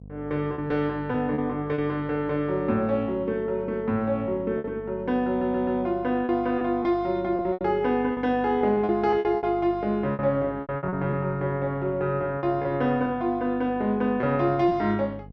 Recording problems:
mains hum; 50 Hz, harmonics up to 550 Hz, SNR 19 dB
lost packets; 7% of the sound replaced, filled with repeated pitch periods
audio stuttering; at 5.5 s

